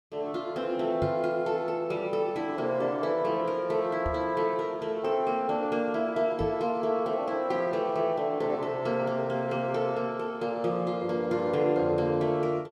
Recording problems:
microphone thump; at 1 s, at 4 s and at 6.5 s; peak -1 dB vs average level

